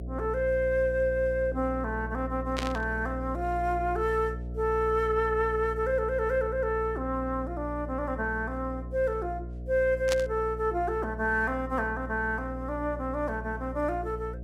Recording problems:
hum; 60 Hz, harmonics up to 720 Hz, SNR 9 dB
burst of static; at 2.5 s and at 10 s; peak +1 dB vs average level

